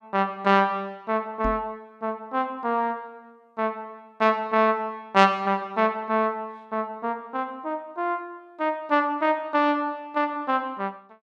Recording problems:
knock on the microphone; at 1.5 s; peak -3 dB vs average level

